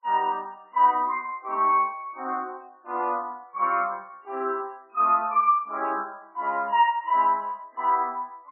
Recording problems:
lossy compression; MP3, log-spectral distance 2 dB, nothing above 2.8 kHz

